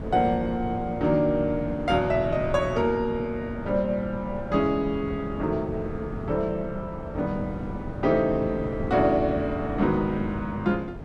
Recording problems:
wind noise; below 330 Hz, SNR 10 dB

